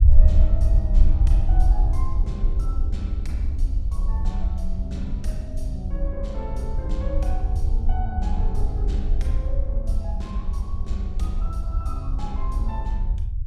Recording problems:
rumble; below 62 Hz, SNR -10 dB

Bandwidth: 14.5 kHz